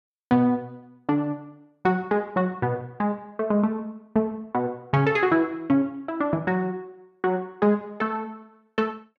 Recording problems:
none

